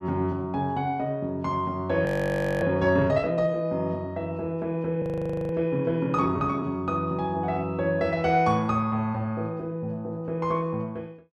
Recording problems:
audio freezing; at 2 s for 0.5 s and at 5 s for 0.5 s

